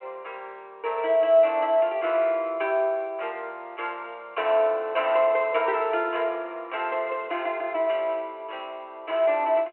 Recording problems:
phone line; 300 Hz to 3.3 kHz, G.726

